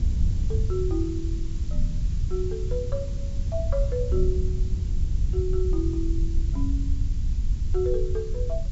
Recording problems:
low-pass filter; nothing above 8 kHz
background hiss; SNR 19 dB
rumble; below 64 Hz, SNR 0 dB
wind on the microphone; below 84 Hz, SNR -2 dB

